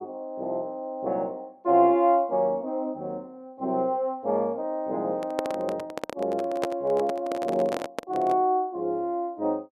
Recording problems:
handling noise; from 5 to 8.5 s; peak +2 dB vs average level

